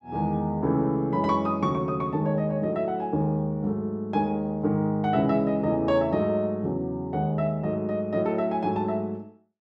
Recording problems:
none

